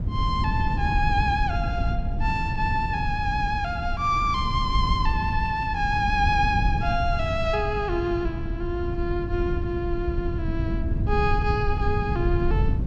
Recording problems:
rumble; below 120 Hz, SNR 2 dB

